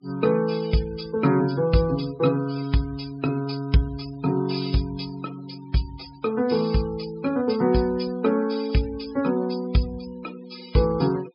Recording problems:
treble cut off; nothing above 5.5 kHz
denoising artefacts; signal-to-artefact ratio 21 dB

